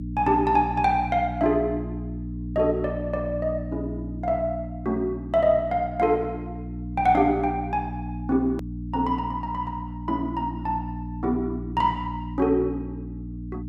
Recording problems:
hum; 60 Hz, harmonics up to 300 Hz, SNR 8 dB
edit click; at 8.5 s

